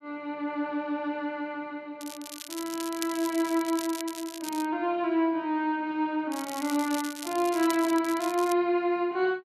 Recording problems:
crackle; from 2 to 4.5 s and from 6.5 to 8.5 s; loose cable, SNR 11 dB

